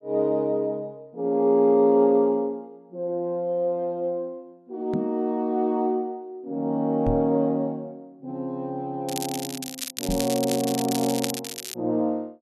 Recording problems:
microphone bump; at 5 s, at 7 s and at 10 s; peak 0 dB vs average level
crackling; from 9 to 12 s; loose cable, SNR 8 dB

